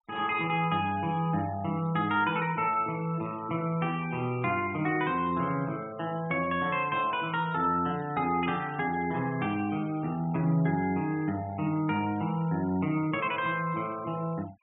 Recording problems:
low-pass filter; nothing above 4 kHz
noise reduction artefacts; signal-to-artefact ratio 22 dB

